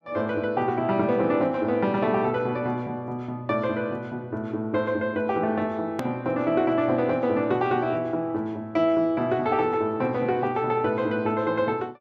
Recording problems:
edit click; at 6 s

